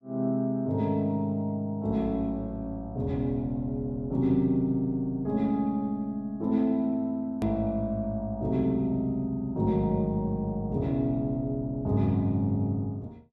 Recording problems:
click at an edit; at 7.5 s

